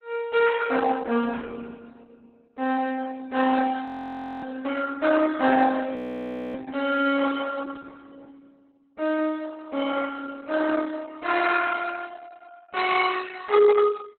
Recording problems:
codec artefacts; Opus, log-spectral distance 4 dB, nothing above 4 kHz
frozen audio; at 4 s for 0.5 s and at 6 s for 0.5 s

